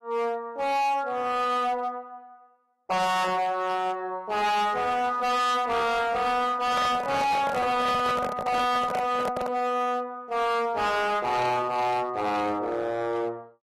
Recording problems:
lossy codec; AAC, log-spectral distance 2 dB, nothing above 13.1 kHz
distorted audio; hard clipping, signal-to-distortion ratio 7 dB
microphone handling noise; from 6.5 to 9.5 s; peak -2 dB vs average level

